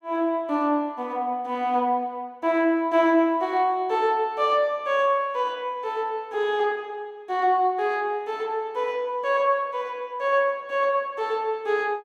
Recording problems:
none

